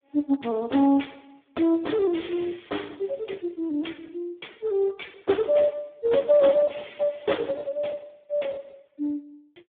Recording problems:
phone line; 240 Hz to 3.6 kHz, Speex

